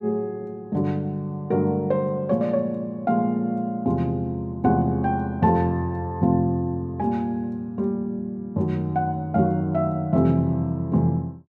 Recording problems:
none

